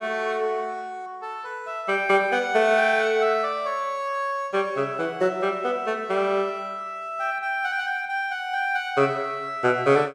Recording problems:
none

